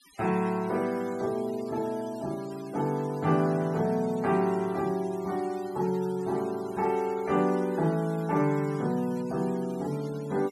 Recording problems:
denoising artefacts; signal-to-artefact ratio 21 dB

